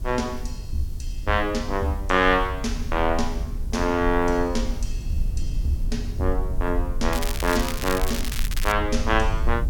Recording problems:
background hiss; SNR 28 dB
rumble; below 60 Hz, SNR 5 dB
crackling; from 7 to 8.5 s; loose cable, SNR 7 dB

